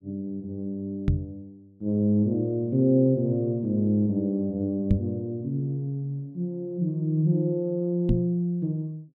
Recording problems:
microphone bump; at 1 s, at 5 s and at 8 s; peak +7 dB vs average level

